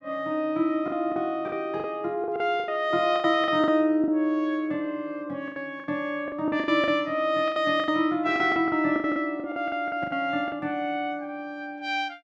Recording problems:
lost packets; 13% of the sound replaced, filled with the last packet

